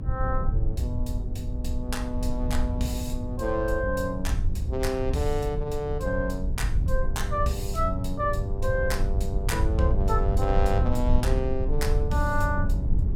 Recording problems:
hum; 60 Hz, harmonics up to 420 Hz, SNR 14 dB
rumble; below 84 Hz, SNR -1 dB

